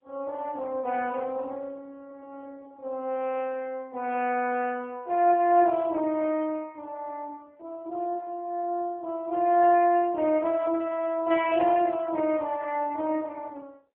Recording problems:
telephone audio; 260 Hz to 3.3 kHz, AMR-NB

